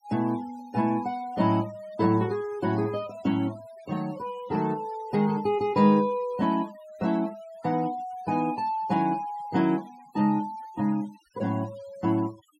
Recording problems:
denoising artefacts; signal-to-artefact ratio 24 dB

